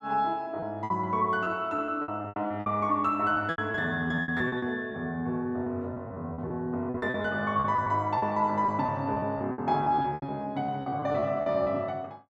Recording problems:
packet loss; 14% of the sound replaced, filled with repeated pitch periods

